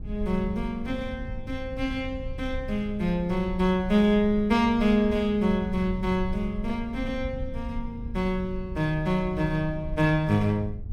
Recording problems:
rumble; below 88 Hz, SNR 11 dB

